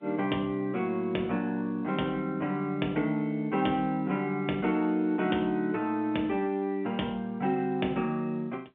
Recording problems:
telephone audio; 220 Hz to 3.6 kHz, G.711

